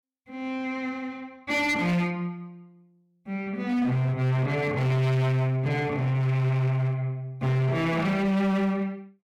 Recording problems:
distorted audio; hard clipping, signal-to-distortion ratio 7 dB

